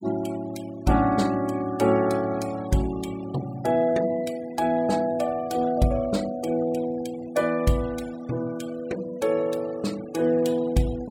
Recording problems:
noise reduction artefacts; signal-to-artefact ratio 20 dB

